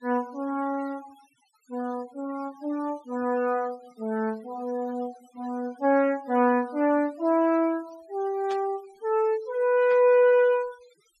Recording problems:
noise reduction artefacts; signal-to-artefact ratio 25 dB
static burst; at 8.5 s and at 10 s; peak -14 dB vs average level

